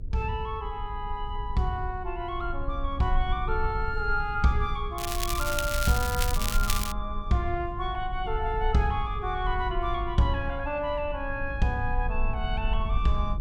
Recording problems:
hum; 50 Hz, harmonics up to 550 Hz, SNR 18 dB
rumble; below 56 Hz, SNR 5 dB
crackle; from 5 to 7 s; loose cable, SNR 3 dB

